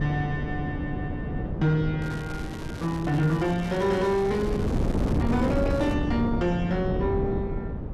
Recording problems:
distortion; soft clipping, signal-to-distortion ratio 12 dB
wind noise; below 300 Hz, SNR 3 dB
crackle; from 2 to 6 s; loose cable, SNR 16 dB

